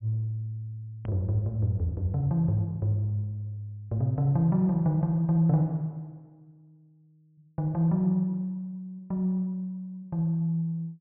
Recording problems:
treble cut off; nothing above 3.1 kHz
edit click; at 1 s

